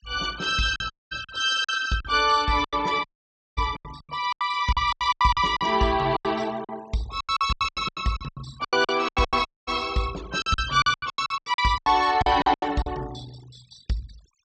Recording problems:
low-pass filter; nothing above 8 kHz
noise reduction artefacts; signal-to-artefact ratio 22 dB
lost packets; 18% of the sound replaced, filled with silence
dropout; at 1 s, at 3 s for 0.5 s and at 9.5 s

